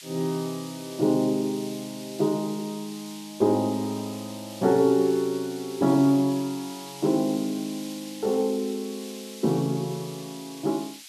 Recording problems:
hiss; SNR 16 dB

